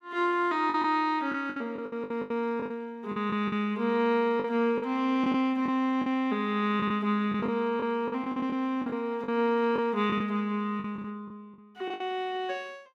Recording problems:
packet loss; 11% of the sound replaced, filled with the last packet

